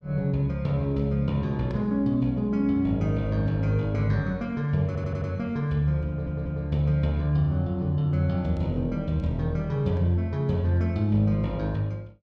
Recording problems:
audio stuttering; at 5 s and at 6 s

